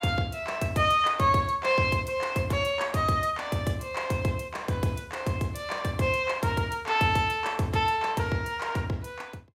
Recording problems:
none

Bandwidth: 16 kHz